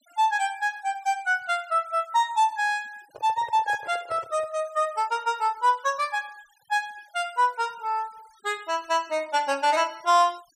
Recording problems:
denoising artefacts; signal-to-artefact ratio 27 dB
microphone handling noise; from 3 to 4.5 s; peak -12 dB vs average level

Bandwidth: 15.5 kHz